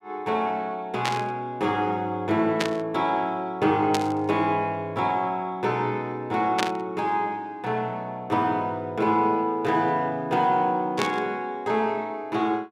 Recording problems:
static burst; 5 times, first at 1 s; peak +3 dB vs average level

